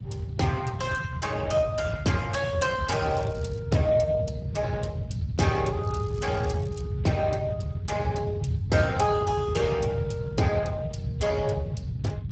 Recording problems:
codec artefacts; Speex, log-spectral distance 3 dB, nothing above 8 kHz
rumble; below 150 Hz, SNR 4 dB
crackle; at 3 s and at 6 s; loose cable, SNR 26 dB

